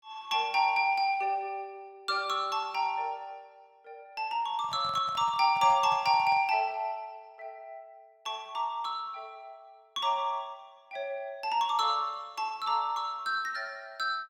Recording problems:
handling noise; from 4.5 to 6.5 s; peak -12 dB vs average level

